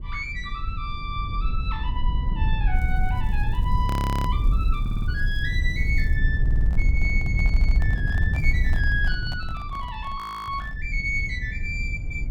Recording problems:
rumble; below 72 Hz, SNR -4 dB
crackling; from 3 to 6 s and at 8.5 s; loose cable, SNR 28 dB
frozen audio; at 4 s and at 10 s
audio stuttering; at 5 s, at 6.5 s and at 7.5 s
handling noise; from 6.5 to 11 s; peak -6 dB vs average level

